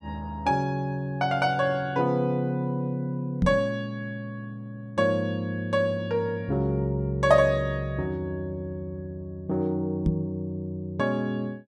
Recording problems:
microphone thump; at 3.5 s and at 10 s; peak +6 dB vs average level

